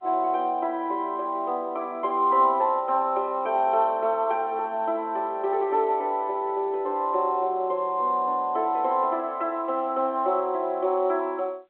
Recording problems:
telephone audio; 240 Hz to 3.5 kHz, G.711

